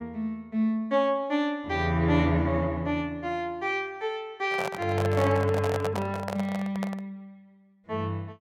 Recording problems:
handling noise; from 4.5 to 7 s; peak -1 dB vs average level

